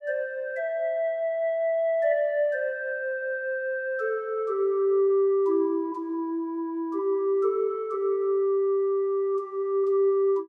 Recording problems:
none

